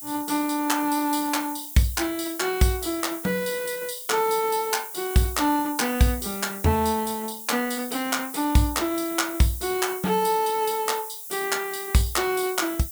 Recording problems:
background hiss; SNR 10 dB

